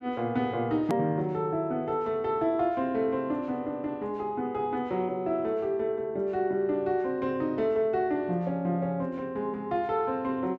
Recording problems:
hard cut with a click; at 1 s

